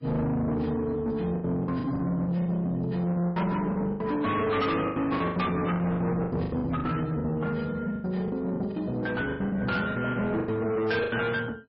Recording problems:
lossy compression; MP3, log-spectral distance 2 dB, nothing above 5.5 kHz
distortion; soft clipping, signal-to-distortion ratio 8 dB
packet loss; 14% of the sound replaced, filled with the last packet

